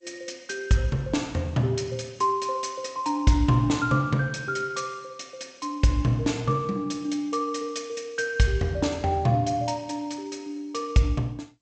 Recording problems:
codec artefacts; G.722, log-spectral distance 4 dB, nothing above 7.8 kHz

